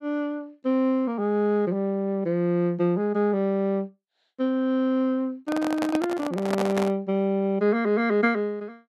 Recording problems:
handling noise; from 5.5 to 7 s; peak -1 dB vs average level

